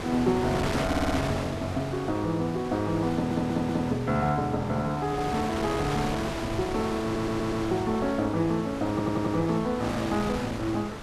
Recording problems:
wind noise; below 1.7 kHz, SNR 6 dB
stutter; 4 times, first at 1 s

